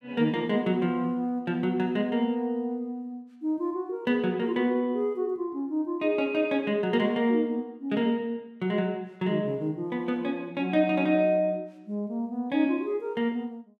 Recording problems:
none

